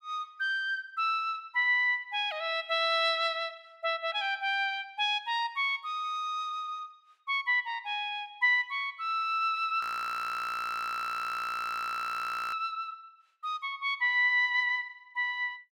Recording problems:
frozen audio; at 10 s for 2.5 s

